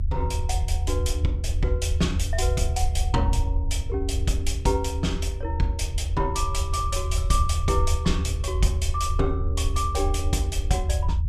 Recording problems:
rumble; below 80 Hz, SNR -1 dB

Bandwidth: 14 kHz